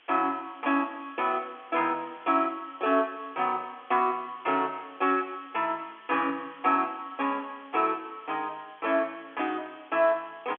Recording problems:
telephone audio; 260 Hz to 3.4 kHz, G.711
hiss; SNR 26 dB

